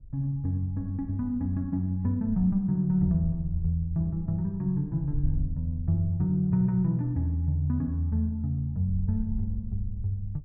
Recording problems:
wind on the microphone; below 58 Hz, SNR 13 dB

